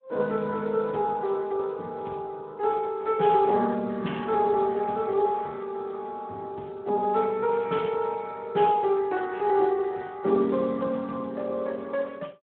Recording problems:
phone line; 170 Hz to 3.6 kHz, Speex

